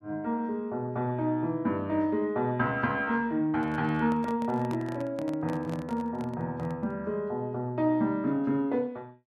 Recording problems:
microphone handling noise; from 3.5 to 7 s; peak -8 dB vs average level

